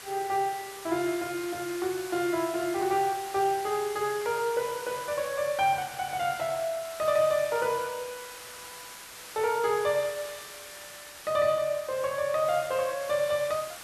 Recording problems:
hiss; slope 0 dB per octave, SNR 13 dB

